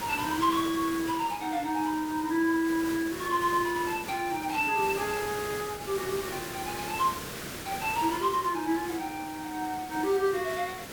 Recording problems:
hiss; SNR 9 dB

